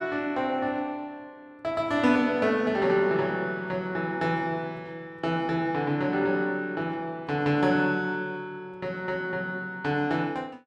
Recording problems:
none

